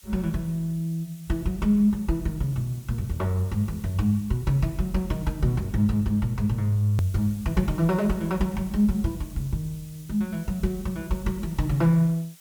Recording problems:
background hiss; slope +2 dB per octave, SNR 23 dB
click at an edit; at 7 s

